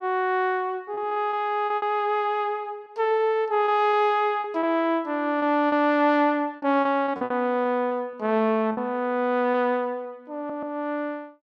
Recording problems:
packet loss; 8% of the sound replaced, filled with repeated pitch periods
audio stuttering; at 10 s

